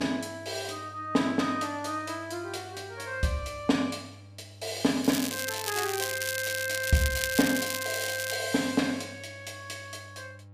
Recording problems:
hum; 50 Hz, harmonics up to 800 Hz, SNR 20 dB
crackling; from 5 to 8.5 s; loose cable, SNR 3 dB

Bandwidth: 15 kHz